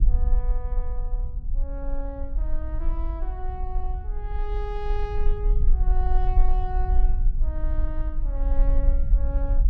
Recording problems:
low-frequency rumble; below 44 Hz, strongest tone 18 Hz, SNR -10 dB

